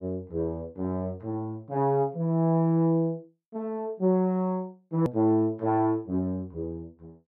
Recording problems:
edit click; at 5 s

